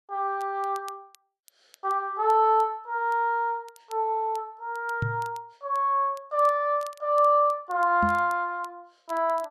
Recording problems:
crackle; vinyl, SNR 29 dB
knock on the microphone; at 5 s and at 8 s; peak 0 dB vs average level

